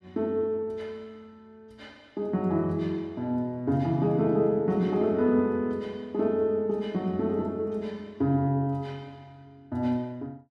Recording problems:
none

